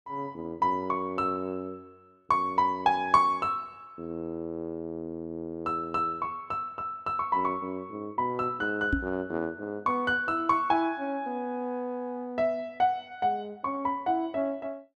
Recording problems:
microphone thump; at 9 s; peak +6 dB vs average level

